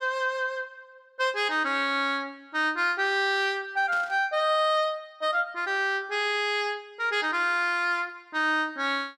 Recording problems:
burst of static; at 4 s; peak -11 dB vs average level

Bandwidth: 14.5 kHz